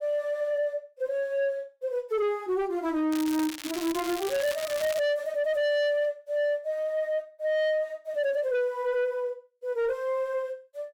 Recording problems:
distorted audio; soft clipping, signal-to-distortion ratio 8 dB
crackling; from 3 to 5 s; loose cable, SNR 9 dB

